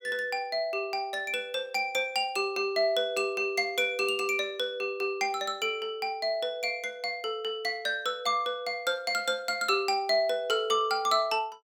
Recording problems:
none

